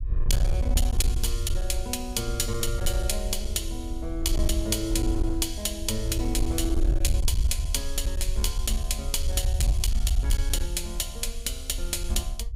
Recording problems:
distorted audio; hard clipping, uneven, signal-to-distortion ratio 10 dB
low-frequency rumble; below 62 Hz, SNR 0 dB

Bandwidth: 15.5 kHz